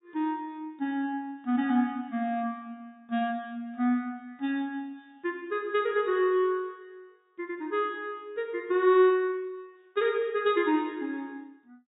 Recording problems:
low-pass filter; nothing above 4 kHz

